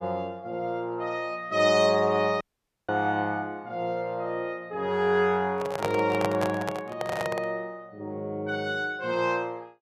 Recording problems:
audio cutting out; at 2.5 s
microphone handling noise; from 5.5 to 7.5 s; peak +2 dB vs average level

